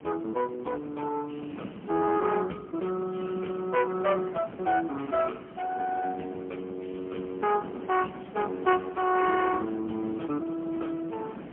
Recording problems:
telephone audio; 150 Hz to 3.2 kHz, AMR-NB, then MP3
background hiss; SNR 14 dB

